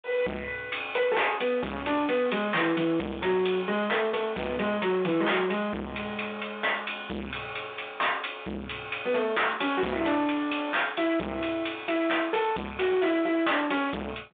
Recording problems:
telephone audio; 170 Hz to 3.6 kHz, G.726
distorted audio; soft clipping, signal-to-distortion ratio 5 dB

